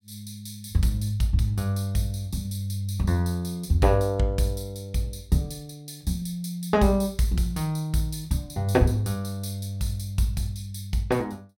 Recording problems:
none

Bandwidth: 16.5 kHz